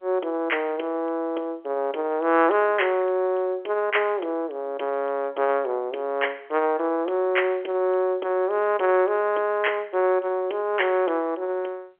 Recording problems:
telephone audio; 300 Hz to 3.3 kHz, G.711

